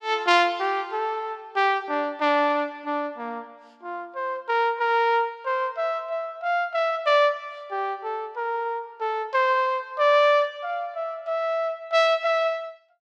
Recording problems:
none

